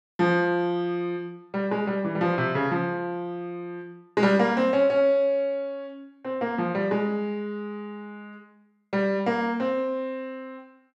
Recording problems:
none

